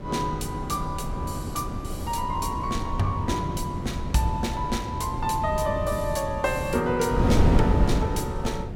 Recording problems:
wind on the microphone; below 230 Hz, SNR 1 dB

